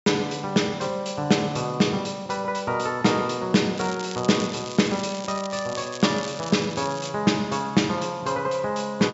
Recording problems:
treble missing; nothing above 8 kHz
crackle; from 4 to 7 s; loose cable, SNR 14 dB

